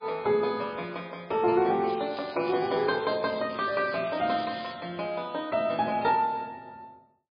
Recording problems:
lossy compression; MP3, log-spectral distance 5 dB, nothing above 4.4 kHz
crackle; at 2 s and from 3 to 4.5 s; loose cable, SNR 17 dB

